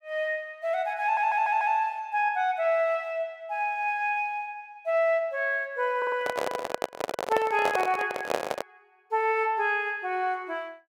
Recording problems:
stutter; at 1 s and at 6 s
handling noise; from 6 to 8.5 s; peak +3 dB vs average level

